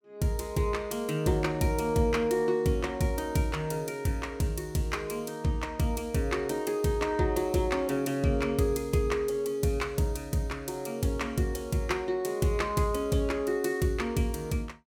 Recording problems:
none

